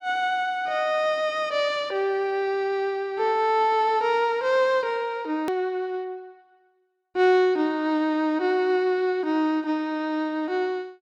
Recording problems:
click at an edit; at 5.5 s

